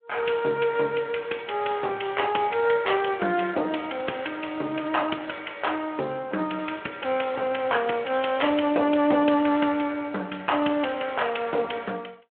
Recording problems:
telephone audio; 240 Hz to 3.3 kHz, Speex

